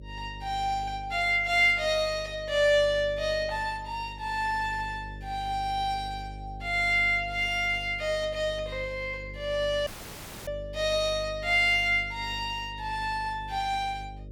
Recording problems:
hum; 50 Hz, harmonics up to 600 Hz, SNR 16 dB
dropout; at 10 s for 0.5 s

